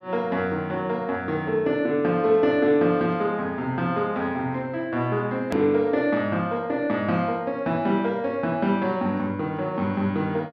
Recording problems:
low-pass filter; nothing above 6.1 kHz
edit click; at 5.5 s

